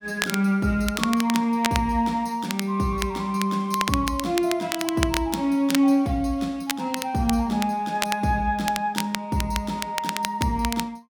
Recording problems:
crackling; vinyl, SNR 8 dB

